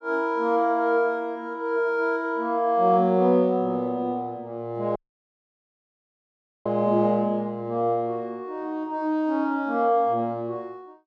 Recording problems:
audio cutting out; at 5 s for 1.5 s

